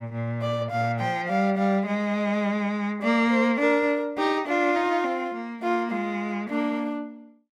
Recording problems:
none

